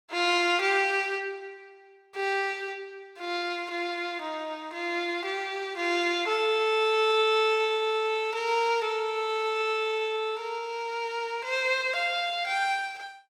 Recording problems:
none

